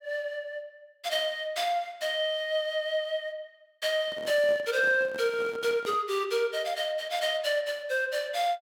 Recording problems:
microphone handling noise; from 4 to 6 s; peak -10 dB vs average level

